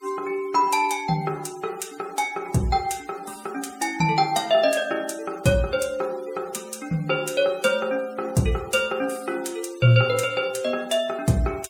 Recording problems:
noise reduction artefacts; signal-to-artefact ratio 22 dB

